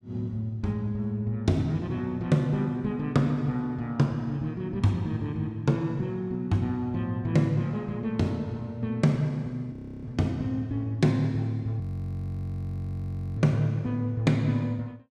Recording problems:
frozen audio; at 9.5 s and at 12 s for 1.5 s

